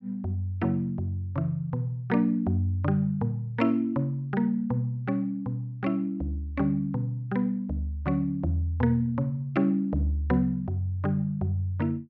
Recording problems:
none

